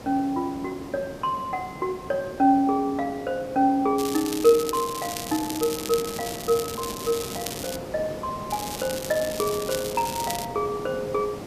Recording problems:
hiss; SNR 12 dB
crackling; from 4 to 8 s and from 8.5 to 10 s; loose cable, SNR 8 dB

